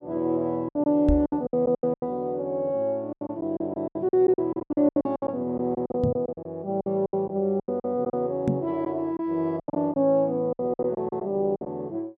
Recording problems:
packet loss; 16% of the sound replaced, filled with silence
microphone thump; at 1 s, at 6 s and at 8.5 s; peak +5 dB vs average level

